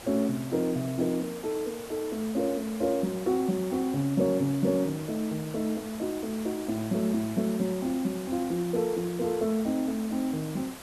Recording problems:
hiss; slope -3 dB per octave, SNR 14 dB

